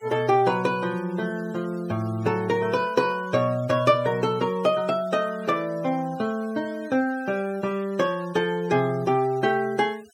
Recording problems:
denoising artefacts; signal-to-artefact ratio 23 dB

